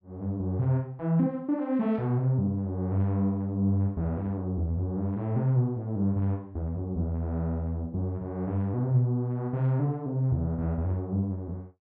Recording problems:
none

